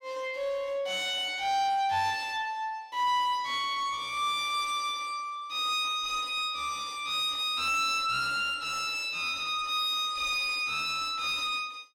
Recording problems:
distortion; soft clipping, signal-to-distortion ratio 9 dB

